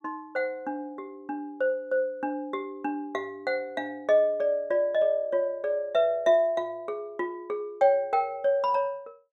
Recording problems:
none

